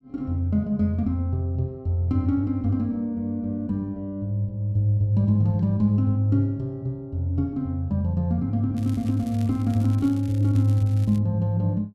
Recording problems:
crackling; from 9 to 11 s; loose cable, SNR 26 dB

